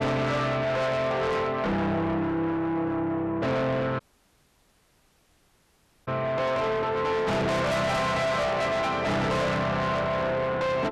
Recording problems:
distortion; soft clipping, signal-to-distortion ratio 6 dB
audio cutting out; at 4 s for 2 s

